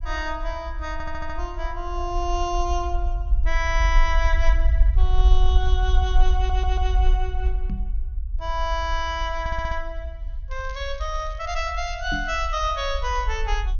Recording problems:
treble missing; nothing above 6.6 kHz
low-frequency rumble; below 52 Hz, SNR -2 dB
audio stuttering; at 1 s, at 6.5 s and at 9.5 s
knock on the microphone; at 7.5 s and at 12 s; peak 0 dB vs average level
crackling; from 11 to 13 s; loose cable, SNR 23 dB

